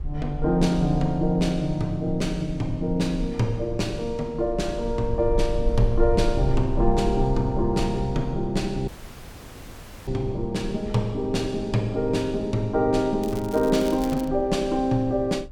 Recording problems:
rumble; below 52 Hz, strongest tone 20 Hz, SNR 10 dB
dropout; at 9 s for 1 s
crackling; from 13 to 14 s; loose cable, SNR 18 dB

